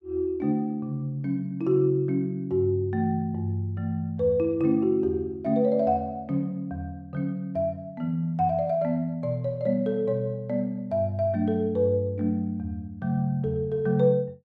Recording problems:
none

